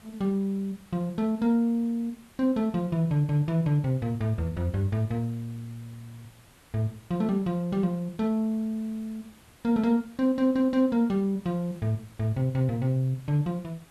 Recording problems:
background hiss; slope -3 dB per octave, SNR 27 dB

